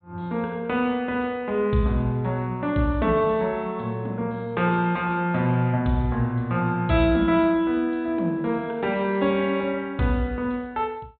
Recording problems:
treble cut off; nothing above 4 kHz

